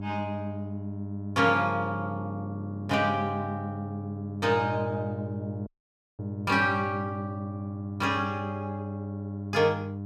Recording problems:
hum; 50 Hz, harmonics up to 700 Hz, SNR 7 dB
audio cutting out; at 5.5 s for 0.5 s

